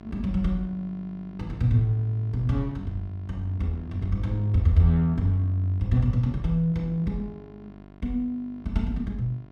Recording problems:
electrical hum; 50 Hz, harmonics up to 2.1 kHz, SNR 20 dB

